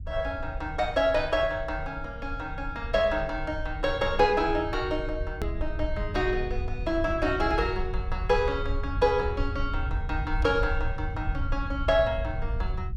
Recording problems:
rumble; below 76 Hz, SNR 6 dB
hard cut with a click; at 5.5 s

